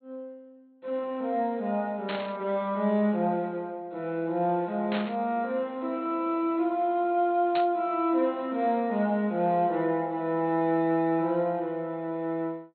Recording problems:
low-pass filter; nothing above 4.4 kHz
static burst; at 2 s, at 5 s and at 7.5 s; peak -3 dB vs average level

